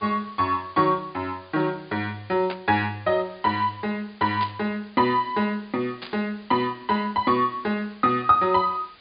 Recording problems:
treble cut off; nothing above 4.8 kHz
hiss; SNR 27 dB
burst of static; at 2.5 s, at 4.5 s and at 6 s; peak -6 dB vs average level

